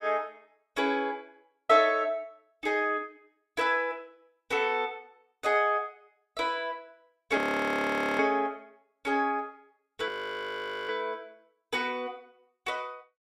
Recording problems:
audio freezing; at 7.5 s for 1 s and at 10 s for 1 s

